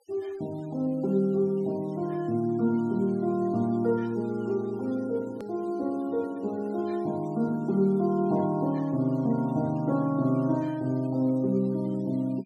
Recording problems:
noise reduction artefacts; signal-to-artefact ratio 27 dB
edit click; at 5.5 s

